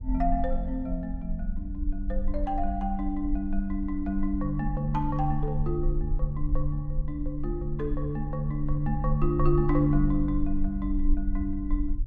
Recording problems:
low-frequency rumble; below 46 Hz, strongest tone 20 Hz, SNR 4 dB

